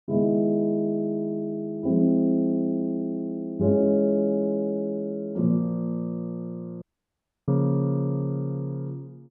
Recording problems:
dropout; at 7 s for 0.5 s

